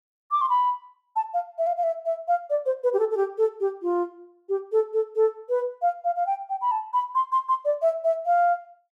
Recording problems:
none

